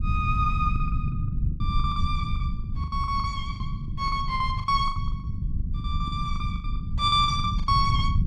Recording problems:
rumble; below 120 Hz, SNR 2 dB
lost packets; 18% of the sound replaced, filled with the last packet

